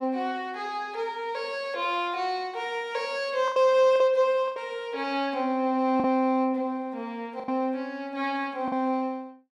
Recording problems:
packet loss; 4% of the sound replaced, filled with the last packet

